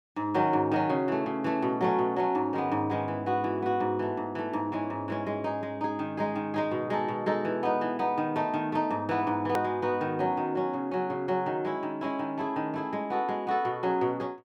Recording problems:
edit click; at 9.5 s

